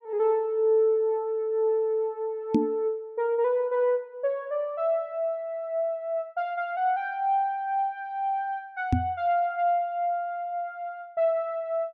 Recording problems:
knock on the microphone; at 2.5 s and at 9 s; peak +9 dB vs average level

